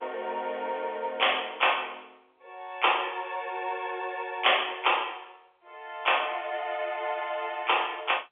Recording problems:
phone line; 300 Hz to 3.5 kHz, G.711

